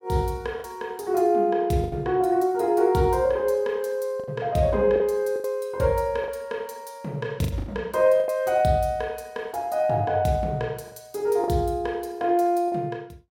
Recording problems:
packet loss; 6% of the sound replaced, filled with the last packet

